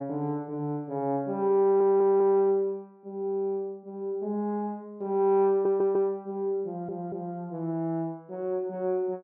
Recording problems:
treble cut off; nothing above 5.8 kHz
stutter; at 1.5 s, at 5.5 s and at 6.5 s

